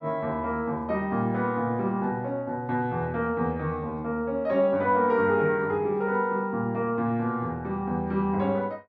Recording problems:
none

